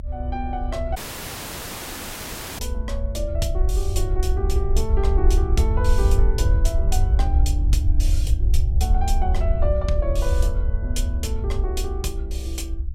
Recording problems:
rumble; below 66 Hz, SNR -6 dB
audio cutting out; at 1 s for 1.5 s

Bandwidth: 16 kHz